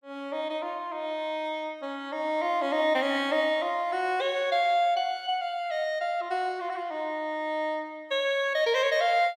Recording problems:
none

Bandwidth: 15 kHz